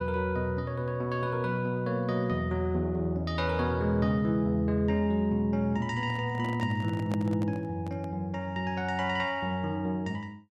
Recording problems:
handling noise; from 6 to 8 s; peak -3 dB vs average level

